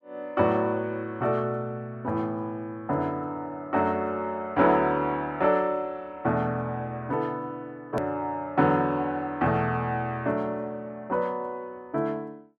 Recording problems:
click at an edit; at 8 s

